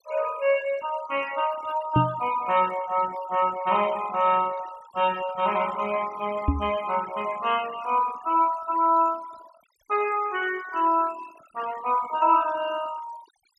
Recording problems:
noise reduction artefacts; signal-to-artefact ratio 17 dB
microphone bump; at 2 s and at 6.5 s; peak +7 dB vs average level

